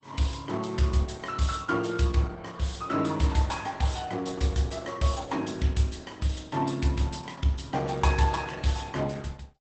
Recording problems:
codec artefacts; Opus, log-spectral distance 5 dB, nothing above 8 kHz

